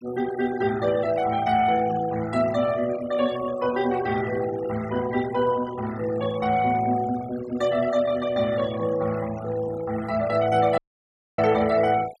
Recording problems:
denoising artefacts; signal-to-artefact ratio 17 dB
dropout; at 11 s for 0.5 s

